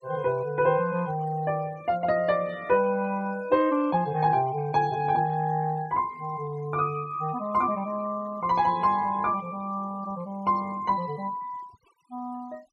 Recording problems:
denoising artefacts; signal-to-artefact ratio 27 dB

